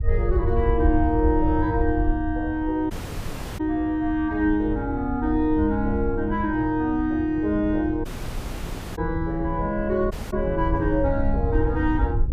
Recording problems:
rumble; below 78 Hz, SNR 6 dB
wind noise; below 160 Hz, SNR 14 dB
dropout; at 3 s for 0.5 s, at 8 s for 1 s and at 10 s

